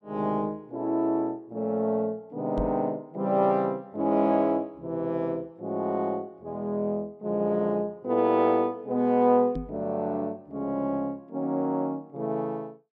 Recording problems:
knock on the microphone; at 2.5 s and at 9.5 s; peak -2 dB vs average level

